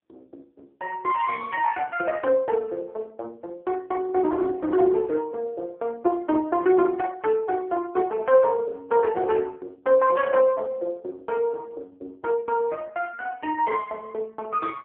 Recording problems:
phone line; 260 Hz to 2.8 kHz, AMR-NB

